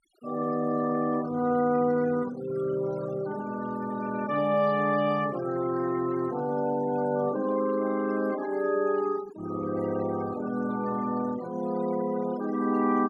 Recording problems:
noise reduction artefacts; signal-to-artefact ratio 17 dB

